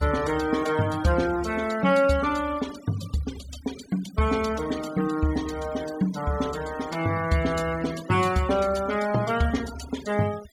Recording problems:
noise reduction artefacts; signal-to-artefact ratio 17 dB

